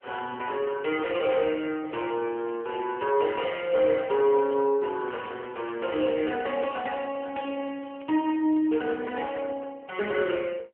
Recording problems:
telephone audio; 260 Hz to 3.3 kHz, AMR-NB
crackling; from 2 to 3.5 s, from 3.5 to 4.5 s and from 5 to 9.5 s; loose cable, SNR 26 dB

